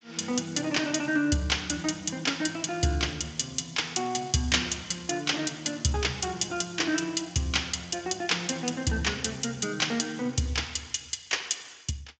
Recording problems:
lossy codec; Speex, log-spectral distance 6 dB, nothing above 7.6 kHz

